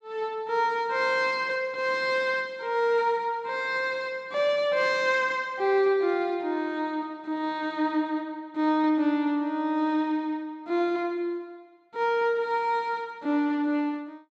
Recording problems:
none

